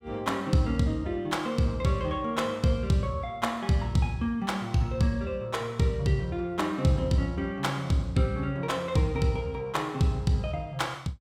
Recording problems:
none

